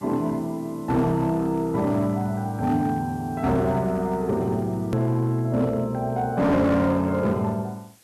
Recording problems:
distorted audio; hard clipping, signal-to-distortion ratio 12 dB
hiss; slope -1 dB per octave, SNR 29 dB
click at an edit; at 5 s

